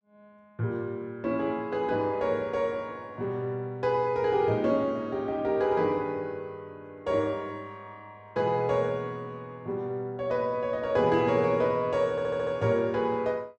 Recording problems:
audio stuttering; at 12 s

